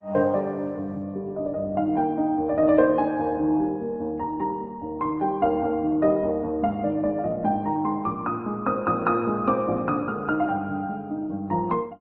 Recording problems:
lossy compression; MP3, then Opus, log-spectral distance 2 dB

